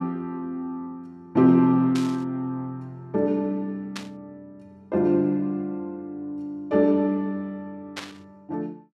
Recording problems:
static burst; at 2 s, at 4 s and at 8 s; peak -5 dB vs average level

